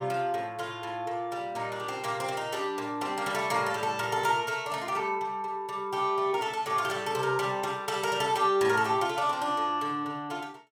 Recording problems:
none

